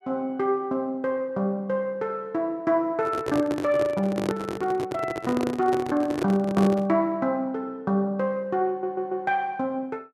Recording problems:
microphone handling noise; from 3 to 7 s; peak +3 dB vs average level
stutter; at 8.5 s

